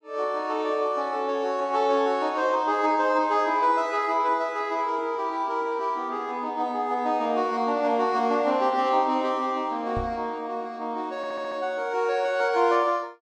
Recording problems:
microphone thump; at 10 s; peak -4 dB vs average level
stutter; at 11 s

